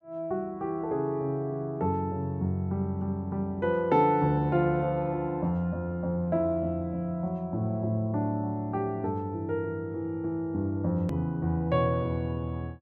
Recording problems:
edit click; at 11 s

